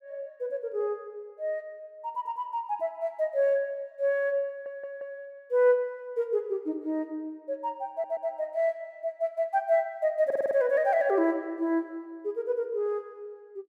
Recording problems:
audio stuttering; at 4.5 s, at 8 s and at 10 s

